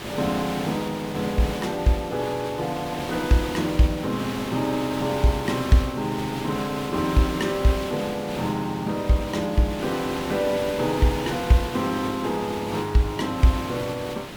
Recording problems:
background hiss; slope -4 dB per octave, SNR 8 dB

